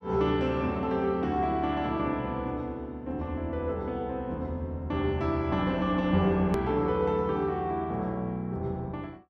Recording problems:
hard cut with a click; at 6.5 s

